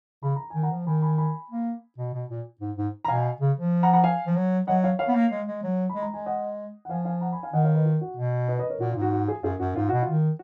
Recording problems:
none

